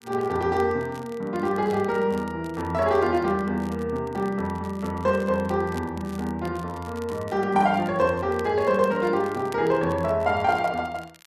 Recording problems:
crackling; vinyl, SNR 25 dB

